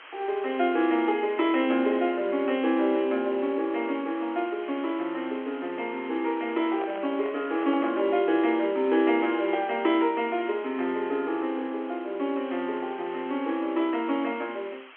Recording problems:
telephone audio; 240 Hz to 3.3 kHz, G.711
background hiss; SNR 20 dB
handling noise; from 6.5 to 8 s; peak -9 dB vs average level

